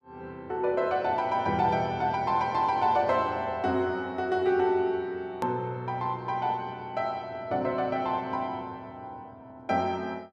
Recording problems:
hard cut with a click; at 5.5 s

